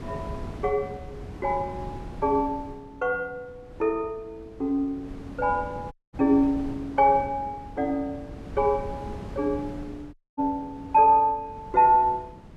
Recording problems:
wind noise; below 310 Hz, SNR 16 dB
dropout; at 6 s and at 10 s

